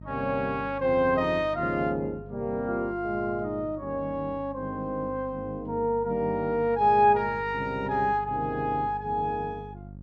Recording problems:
electrical hum; 50 Hz, harmonics up to 550 Hz, SNR 17 dB

